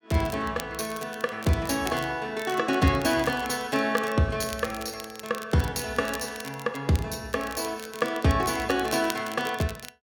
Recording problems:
crackling; vinyl, SNR 15 dB

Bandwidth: 18 kHz